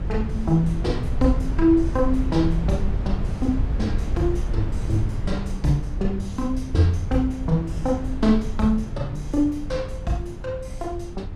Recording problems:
hum; 50 Hz, harmonics up to 400 Hz, SNR 21 dB
rumble; below 94 Hz, SNR 5 dB

